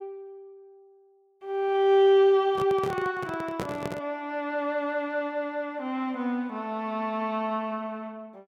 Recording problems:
handling noise; from 2.5 to 4 s; peak -2 dB vs average level

